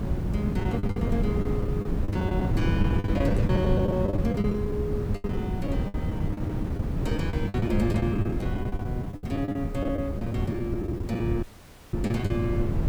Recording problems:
hum; 50 Hz, harmonics up to 550 Hz, SNR 20 dB
hiss; SNR 28 dB
wind on the microphone; below 200 Hz, SNR -2 dB
lost packets; 16% of the sound replaced, filled with the last packet
audio cutting out; at 11 s for 0.5 s

